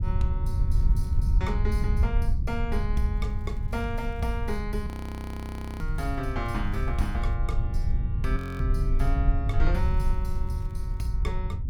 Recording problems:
rumble; below 78 Hz, SNR -5 dB
crackling; 4 times, first at 1 s; loose cable, SNR 29 dB
frozen audio; at 5 s for 1 s and at 8.5 s

